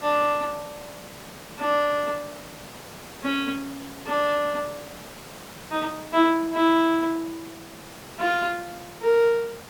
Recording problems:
hiss; slope -4 dB per octave, SNR 16 dB

